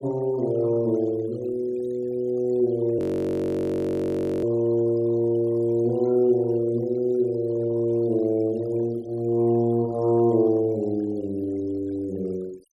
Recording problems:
noise reduction artefacts; signal-to-artefact ratio 27 dB
frozen audio; at 3 s for 1.5 s

